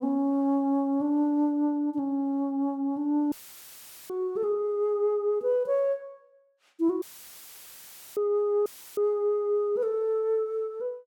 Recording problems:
audio cutting out; at 3.5 s for 1 s, at 7 s for 1 s and at 8.5 s; filled with static

